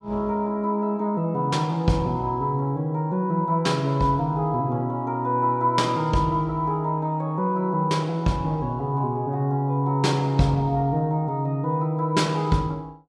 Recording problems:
none

